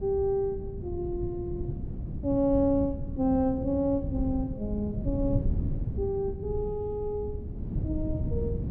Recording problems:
wind on the microphone; below 150 Hz, SNR 5 dB

